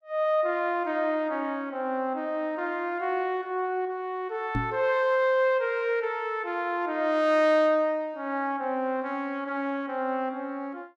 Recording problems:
microphone thump; at 4.5 s; peak +1 dB vs average level

